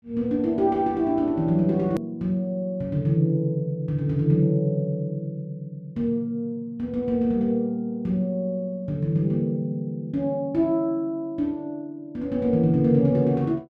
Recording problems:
hard cut with a click; at 2 s

